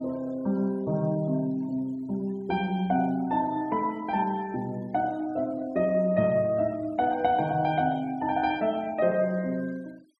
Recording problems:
noise reduction artefacts; signal-to-artefact ratio 27 dB

